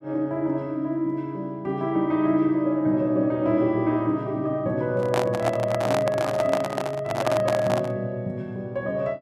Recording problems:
microphone handling noise; from 5 to 8 s; peak +3 dB vs average level

